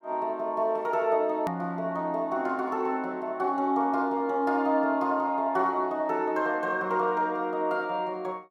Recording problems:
click at an edit; at 1.5 s

